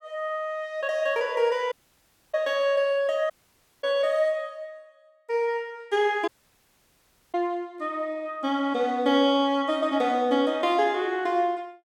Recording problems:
dropout; at 1.5 s for 0.5 s, at 3.5 s for 0.5 s and at 6.5 s for 1 s

